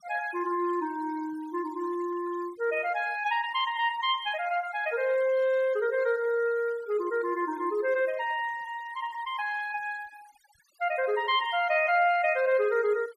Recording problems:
noise reduction artefacts; signal-to-artefact ratio 22 dB

